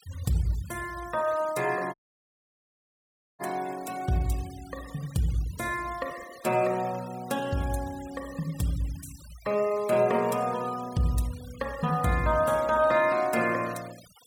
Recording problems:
denoising artefacts; signal-to-artefact ratio 19 dB
dropout; at 2 s for 1.5 s

